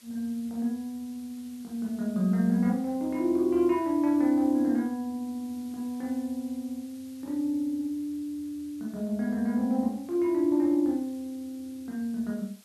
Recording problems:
hiss; slope +1 dB per octave, SNR 26 dB

